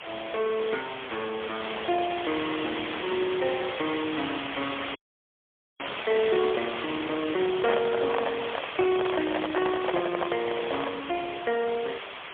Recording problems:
phone line; 300 Hz to 3.3 kHz, AMR-NB, then MP3
background hiss; SNR 6 dB
crackling; from 4.5 to 7 s; loose cable, SNR 16 dB
frozen audio; at 5 s for 1 s
microphone handling noise; from 7.5 to 11 s; peak +5 dB vs average level

